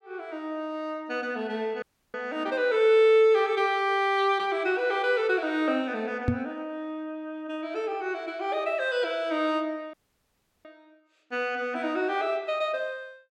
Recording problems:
dropout; at 2 s and at 10 s for 0.5 s
microphone thump; at 6.5 s; peak +5 dB vs average level

